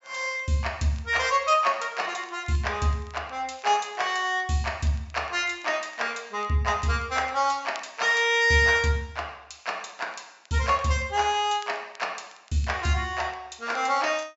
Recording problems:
treble cut off; nothing above 8 kHz
crackling; vinyl, SNR 29 dB

